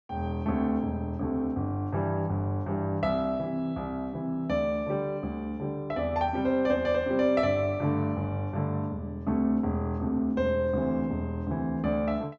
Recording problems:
low-pass filter; nothing above 7.8 kHz

